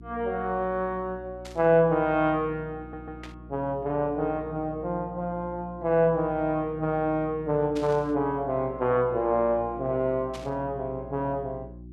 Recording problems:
hum; 60 Hz, harmonics up to 360 Hz, SNR 18 dB
burst of static; 4 times, first at 1.5 s; peak -11 dB vs average level
audio stuttering; at 3 s

